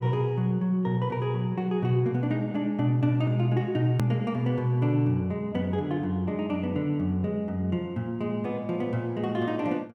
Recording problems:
click at an edit; at 4 s

